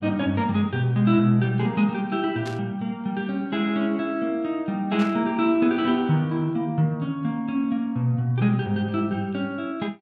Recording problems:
static burst; at 2.5 s and at 5 s; peak -9 dB vs average level

